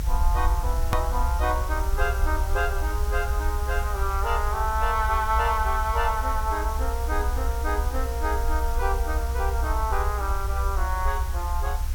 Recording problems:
hiss; slope -2 dB per octave, SNR 12 dB
low-frequency rumble; below 64 Hz, SNR 0 dB
click at an edit; at 1 s

